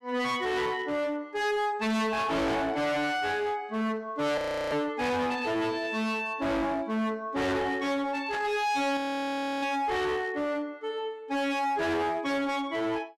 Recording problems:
distorted audio; hard clipping, signal-to-distortion ratio 6 dB
audio freezing; at 4.5 s and at 9 s for 0.5 s
static burst; at 8.5 s; peak -6 dB vs average level

